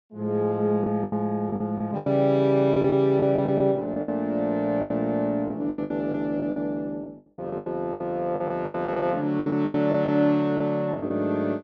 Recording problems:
packet loss; 13% of the sound replaced, filled with the last packet

